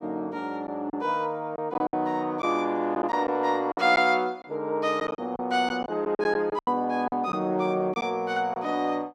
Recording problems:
lost packets; 7% of the sound replaced, filled with silence

